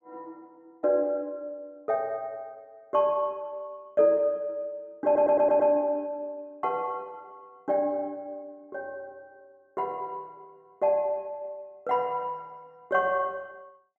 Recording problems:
stutter; at 5 s

